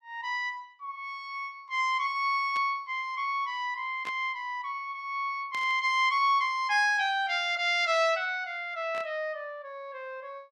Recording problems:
burst of static; 4 times, first at 2.5 s; peak -10 dB vs average level

